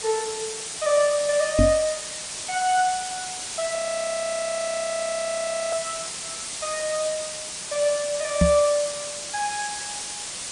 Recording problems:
lossy codec; MP3, log-spectral distance 18 dB
background hiss; slope +1 dB per octave, SNR 5 dB
microphone thump; at 1.5 s and at 8.5 s; peak +9 dB vs average level
frozen audio; at 4 s for 2 s

